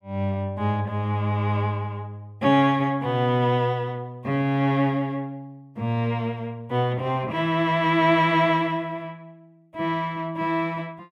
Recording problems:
none

